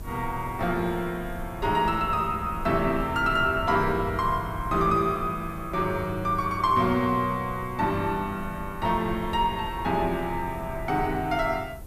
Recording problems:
hiss; slope -1 dB per octave, SNR 27 dB
rumble; below 120 Hz, SNR 14 dB

